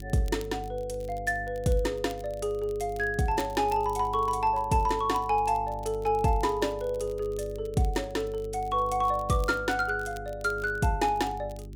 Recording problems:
mains hum; 50 Hz, harmonics up to 400 Hz, SNR 14 dB
crackle; vinyl, SNR 25 dB

